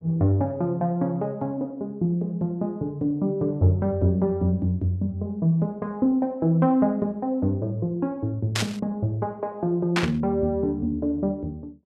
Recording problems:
static burst; at 8.5 s and at 10 s; peak +4 dB vs average level

